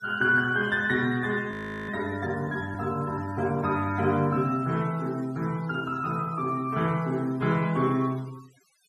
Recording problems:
noise reduction artefacts; signal-to-artefact ratio 22 dB
audio freezing; at 1.5 s

